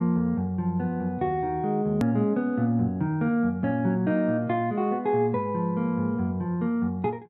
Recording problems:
click at an edit; at 2 s

